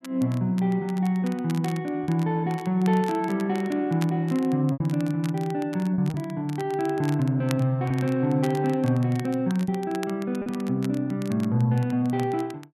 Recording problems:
crackling; vinyl, SNR 20 dB
lost packets; 3% of the sound replaced, filled with repeated pitch periods

